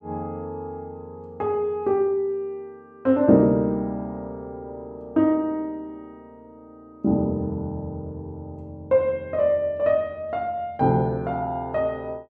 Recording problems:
none

